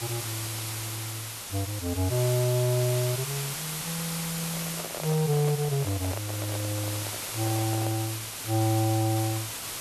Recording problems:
background hiss; slope 0 dB per octave, SNR 4 dB
handling noise; from 4.5 to 8 s; peak -4 dB vs average level

